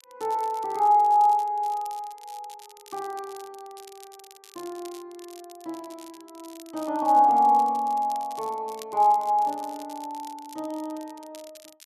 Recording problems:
crackle; vinyl, SNR 25 dB

